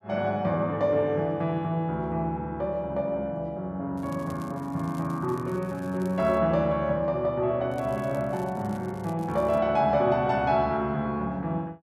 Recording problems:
crackling; from 4 to 6.5 s and from 7.5 to 9.5 s; loose cable, SNR 27 dB

